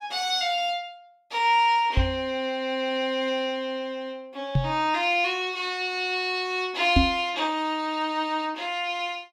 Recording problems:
microphone thump; at 2 s, at 4.5 s and at 7 s; peak +8 dB vs average level

